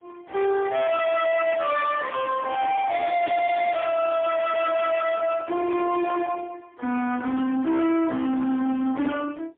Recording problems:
telephone audio; 190 Hz to 2.8 kHz, AMR-NB, then MP3
distorted audio; hard clipping, signal-to-distortion ratio 6 dB
handling noise; from 3.5 to 6.5 s; peak -7 dB vs average level

